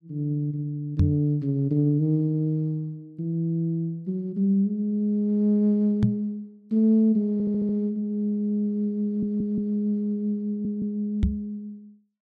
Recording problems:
microphone bump; at 1 s, at 6 s and at 11 s; peak +7 dB vs average level
audio stuttering; at 7.5 s, at 9 s and at 10 s

